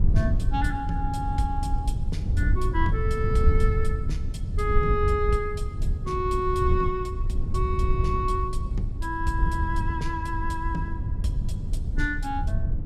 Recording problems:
low-frequency rumble; below 88 Hz, SNR -2 dB

